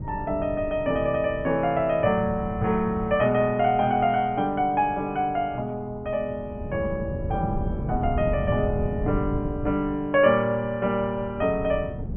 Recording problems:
treble cut off; nothing above 3.3 kHz
wind on the microphone; below 170 Hz, SNR 9 dB

